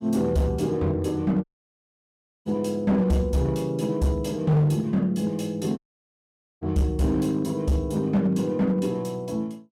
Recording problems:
distortion; hard clipping, signal-to-distortion ratio 11 dB
audio cutting out; at 1.5 s for 1 s and at 6 s for 1 s

